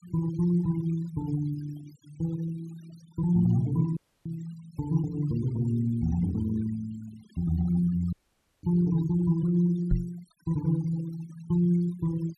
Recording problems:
noise reduction artefacts; signal-to-artefact ratio 22 dB
audio cutting out; at 4 s and at 8 s for 0.5 s
microphone thump; at 10 s; peak +5 dB vs average level

